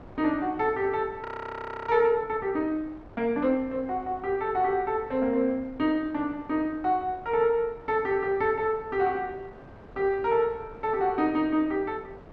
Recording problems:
wind noise; below 720 Hz, SNR 21 dB
audio freezing; at 1.5 s for 0.5 s

